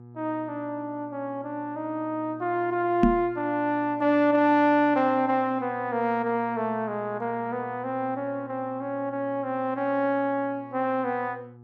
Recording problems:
hum; 60 Hz, harmonics up to 1.2 kHz, SNR 21 dB
microphone thump; at 3 s; peak +9 dB vs average level

